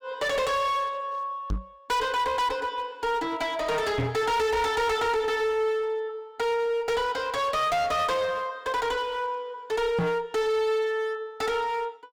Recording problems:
distorted audio; hard clipping, uneven, signal-to-distortion ratio 6 dB
microphone thump; at 1.5 s, at 4 s and at 10 s; peak +4 dB vs average level

